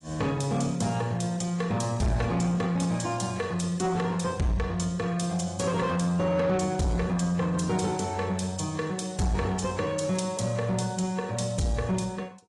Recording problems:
lossy codec; AAC, log-spectral distance 3 dB
distortion; soft clipping, signal-to-distortion ratio 12 dB

